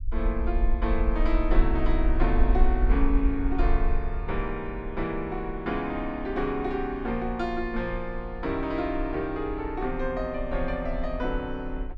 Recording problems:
rumble; below 46 Hz, strongest tone 24 Hz, SNR 2 dB

